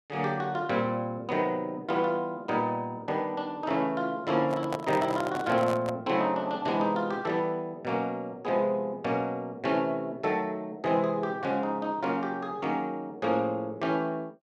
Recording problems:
handling noise; from 4.5 to 6 s; peak -1 dB vs average level

